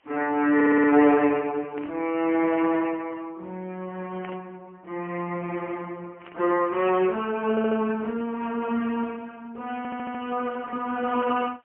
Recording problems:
telephone audio; 240 Hz to 3.1 kHz, AMR-NB, then MP3
hiss; SNR 42 dB
audio stuttering; at 0.5 s, at 7.5 s and at 10 s
burst of static; 4 times, first at 2 s; peak -14 dB vs average level

